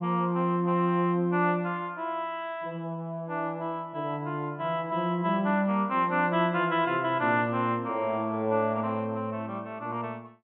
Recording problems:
treble cut off; nothing above 4 kHz

